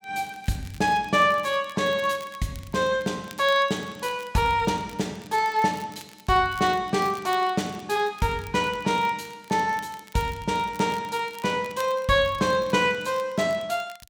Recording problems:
crackling; vinyl, SNR 23 dB

